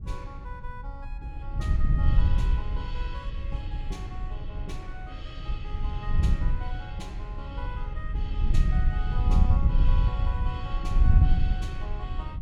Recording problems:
wind noise; below 78 Hz, SNR -12 dB

